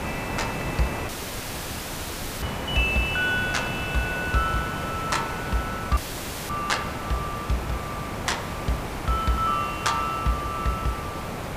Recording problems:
background hiss; SNR 4 dB
audio cutting out; at 1 s for 1.5 s and at 6 s for 0.5 s

